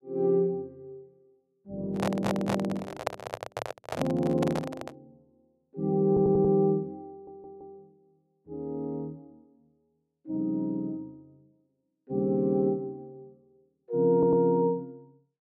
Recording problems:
handling noise; from 2 to 5 s; peak +2 dB vs average level
stutter; 4 times, first at 2 s

